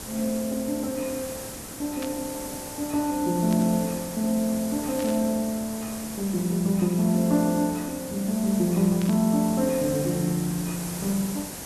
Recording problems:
background hiss; SNR 10 dB
burst of static; 4 times, first at 2 s; peak -8 dB vs average level

